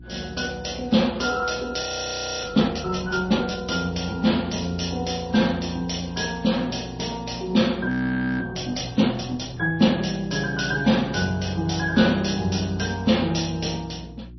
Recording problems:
codec artefacts; MP3, log-spectral distance 8 dB, nothing above 5.8 kHz
hum; 60 Hz, harmonics up to 360 Hz, SNR 19 dB
frozen audio; at 2 s for 0.5 s and at 8 s for 0.5 s

